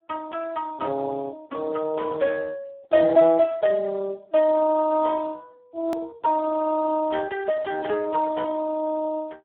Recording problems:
phone line; 190 Hz to 2.9 kHz, Speex
edit click; at 6 s

